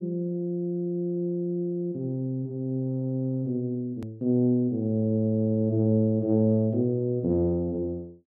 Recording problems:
click at an edit; at 4 s

